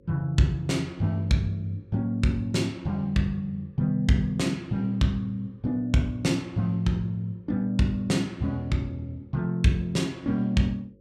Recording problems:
hum; 50 Hz, harmonics up to 550 Hz, SNR 31 dB

